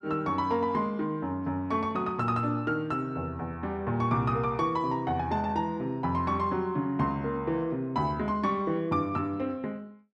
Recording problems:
none

